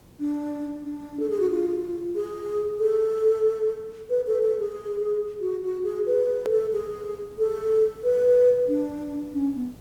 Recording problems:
hiss; SNR 26 dB
hard cut with a click; at 6.5 s

